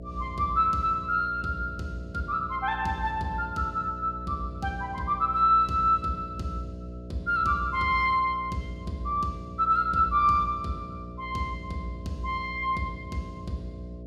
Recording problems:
hum; 60 Hz, harmonics up to 660 Hz, SNR 14 dB

